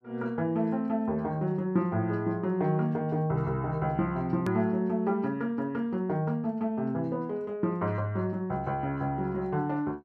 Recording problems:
click at an edit; at 4.5 s

